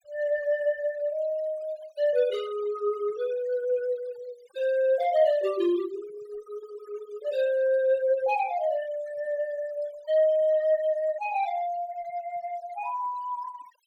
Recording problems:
denoising artefacts; signal-to-artefact ratio 21 dB

